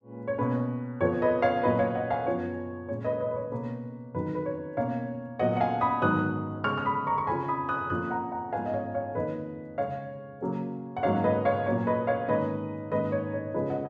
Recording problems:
none

